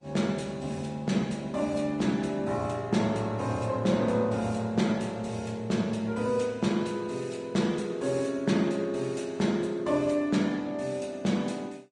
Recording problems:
codec artefacts; Vorbis, log-spectral distance 2 dB

